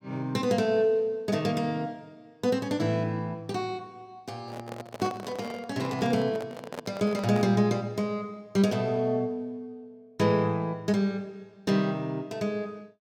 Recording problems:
microphone handling noise; from 4.5 to 7.5 s; peak -4 dB vs average level

